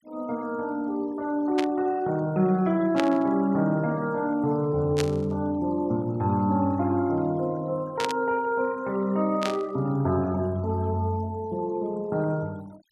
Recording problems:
denoising artefacts; signal-to-artefact ratio 27 dB
static burst; 5 times, first at 1.5 s; peak +1 dB vs average level

